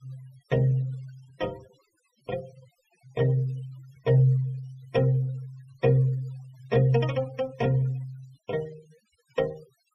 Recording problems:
denoising artefacts; signal-to-artefact ratio 25 dB

